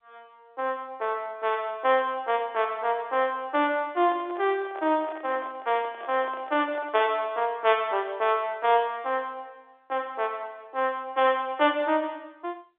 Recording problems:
phone line; 280 Hz to 3.6 kHz, G.711
handling noise; from 4 to 7 s; peak -12 dB vs average level

